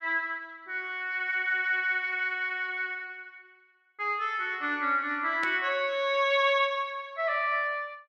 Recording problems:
static burst; at 5.5 s; peak -7 dB vs average level

